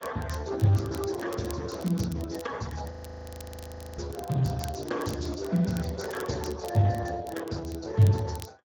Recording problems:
codec artefacts; Opus, then Speex, log-spectral distance 5 dB, nothing above 16 kHz
crackling; vinyl, SNR 20 dB
audio freezing; at 3 s for 1 s

